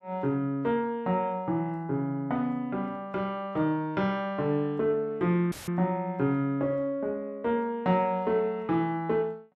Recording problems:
audio cutting out; at 5.5 s; filled with static

